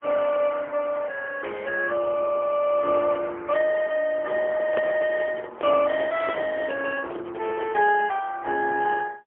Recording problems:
phone line; 280 Hz to 3.1 kHz, AMR-NB, then MP3
handling noise; from 4.5 to 8 s; peak -4 dB vs average level

